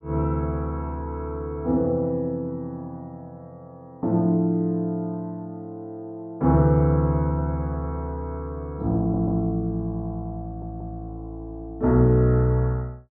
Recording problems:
stutter; at 9 s and at 10 s

